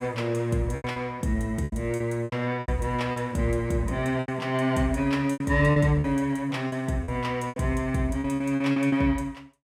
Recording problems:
lost packets; 11% of the sound replaced, filled with repeated pitch periods

